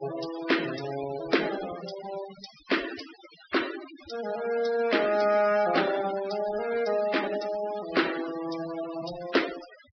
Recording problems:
low-pass filter; nothing above 5.5 kHz
noise reduction artefacts; signal-to-artefact ratio 12 dB

